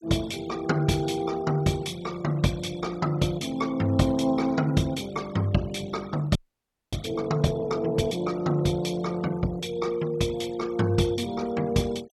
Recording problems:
denoising artefacts; signal-to-artefact ratio 21 dB
audio freezing; at 6.5 s for 0.5 s

